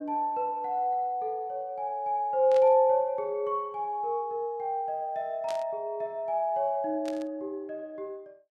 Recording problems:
static burst; at 2.5 s, at 5.5 s and at 7 s; peak -9 dB vs average level

